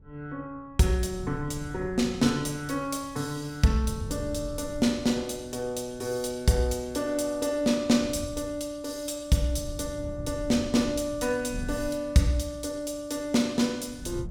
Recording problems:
wind noise; below 130 Hz, SNR 14 dB

